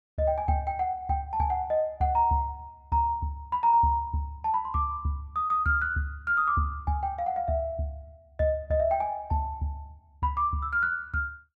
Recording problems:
none

